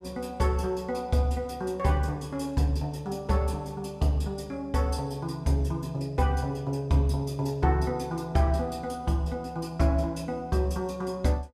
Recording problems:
none

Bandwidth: 14.5 kHz